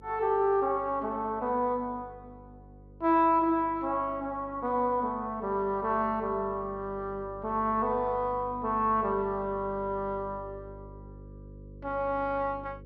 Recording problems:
electrical hum; 50 Hz, harmonics up to 550 Hz, SNR 20 dB

